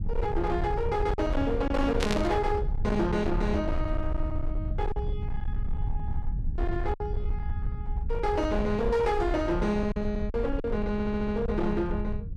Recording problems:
distortion; hard clipping, signal-to-distortion ratio 10 dB
low-frequency rumble; below 84 Hz, SNR 4 dB
lost packets; 3% of the sound replaced, filled with silence
static burst; at 2 s; peak +2 dB vs average level
stutter; at 11 s

